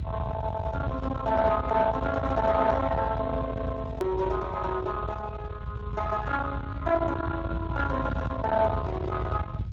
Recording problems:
codec artefacts; Speex, log-spectral distance 2 dB
distortion; soft clipping, signal-to-distortion ratio 9 dB
low-frequency rumble; below 730 Hz, SNR 6 dB
click at an edit; at 4 s

